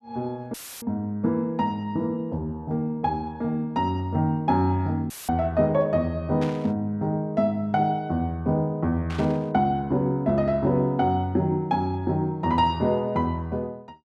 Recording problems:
dropout; at 0.5 s and at 5 s; filled with static
static burst; at 6.5 s and at 9 s; peak -8 dB vs average level

